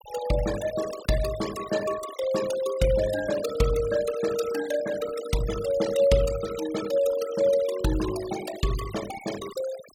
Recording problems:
noise reduction artefacts; signal-to-artefact ratio 12 dB

